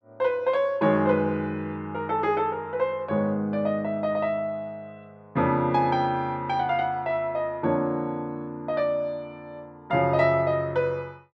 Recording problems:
none

